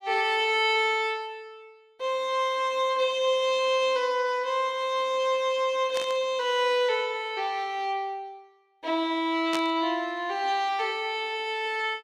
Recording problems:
static burst; at 6 s and at 9.5 s; peak -3 dB vs average level

